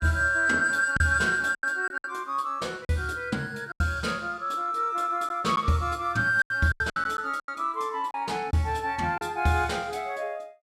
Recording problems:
packet loss; 7% of the sound replaced, filled with silence

